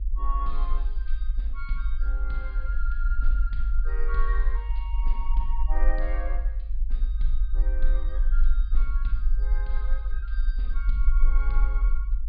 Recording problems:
low-pass filter; nothing above 4.9 kHz
low-frequency rumble; below 46 Hz, strongest tone 22 Hz, SNR -12 dB

